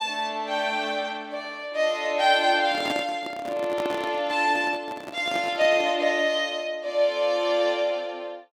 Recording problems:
handling noise; from 2.5 to 6 s; peak -2 dB vs average level

